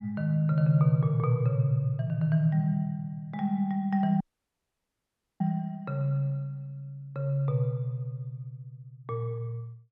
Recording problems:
audio cutting out; at 4 s for 1 s

